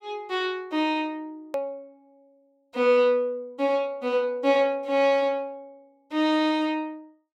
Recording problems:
hard cut with a click; at 1.5 s

